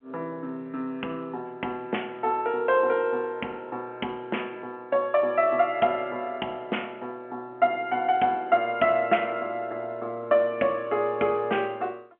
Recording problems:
telephone audio; 190 Hz to 3.2 kHz, G.711

